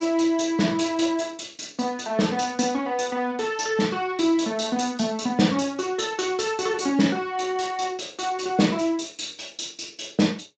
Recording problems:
lossy codec; Speex, log-spectral distance 7 dB

